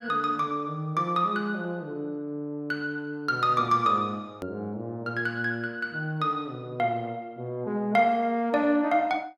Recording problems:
hard cut with a click; at 4.5 s

